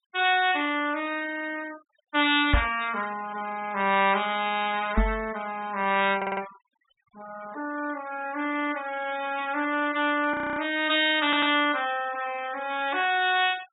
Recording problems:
treble cut off; nothing above 4 kHz
denoising artefacts; signal-to-artefact ratio 18 dB
knock on the microphone; at 2.5 s and at 5 s; peak +6 dB vs average level
stutter; at 6 s and at 11 s
audio freezing; at 10 s

